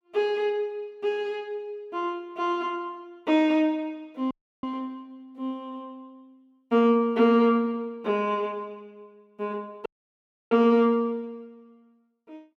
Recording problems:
audio cutting out; at 4.5 s and at 10 s for 0.5 s

